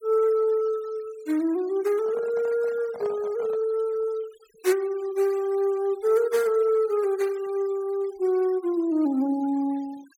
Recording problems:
denoising artefacts; signal-to-artefact ratio 24 dB
microphone handling noise; from 2 to 3.5 s; peak -12 dB vs average level

